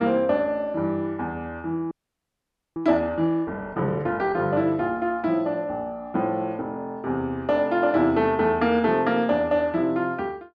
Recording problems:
frozen audio; at 2 s for 1 s

